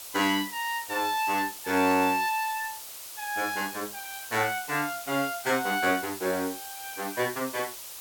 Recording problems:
background hiss; SNR 10 dB

